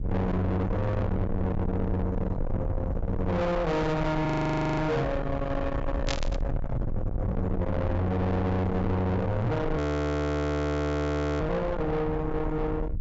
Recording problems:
treble missing; nothing above 8 kHz
distortion; soft clipping, signal-to-distortion ratio 6 dB
rumble; below 330 Hz, SNR 4 dB
frozen audio; at 4.5 s for 0.5 s and at 10 s for 1.5 s
static burst; at 6 s; peak -1 dB vs average level

